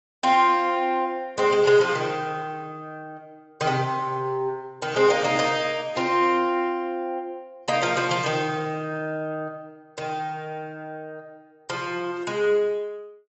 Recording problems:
codec artefacts; AAC, log-spectral distance 2 dB, nothing above 7.6 kHz

